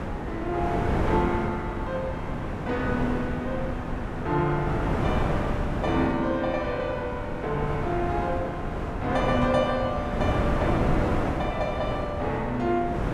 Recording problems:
wind noise; below 600 Hz, SNR 1 dB

